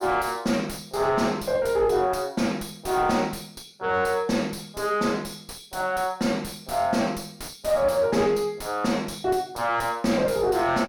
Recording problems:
distorted audio; soft clipping, signal-to-distortion ratio 7 dB

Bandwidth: 17 kHz